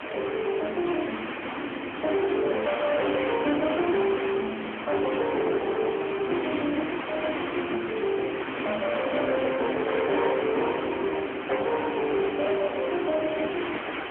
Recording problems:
telephone audio; 260 Hz to 3.1 kHz, AMR-NB
distorted audio; soft clipping, signal-to-distortion ratio 7 dB
hiss; SNR 6 dB

